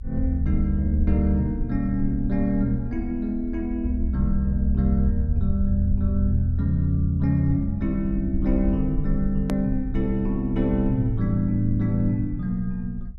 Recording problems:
rumble; below 58 Hz, SNR 8 dB
hard cut with a click; at 9.5 s

